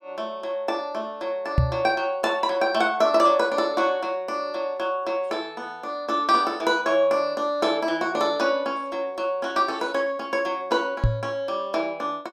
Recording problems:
knock on the microphone; at 1.5 s and at 11 s; peak +8 dB vs average level

